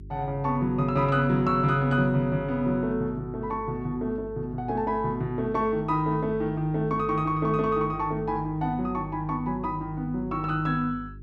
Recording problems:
hum; 50 Hz, harmonics up to 400 Hz, SNR 17 dB

